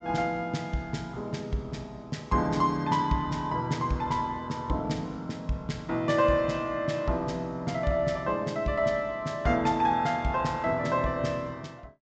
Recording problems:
treble cut off; nothing above 8 kHz

